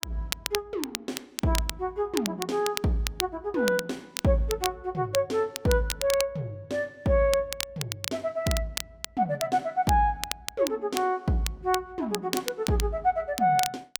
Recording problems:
crackle; vinyl, SNR 8 dB

